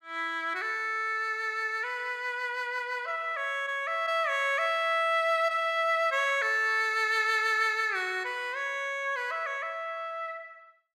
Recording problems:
none

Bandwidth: 15 kHz